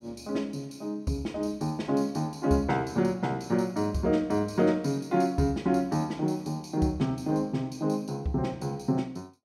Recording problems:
none

